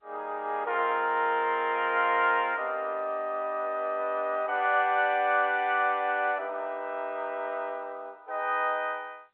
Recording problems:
telephone audio; 320 Hz to 3.5 kHz, G.711

